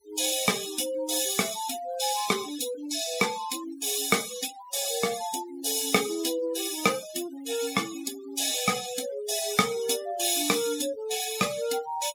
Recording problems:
noise reduction artefacts; signal-to-artefact ratio 12 dB

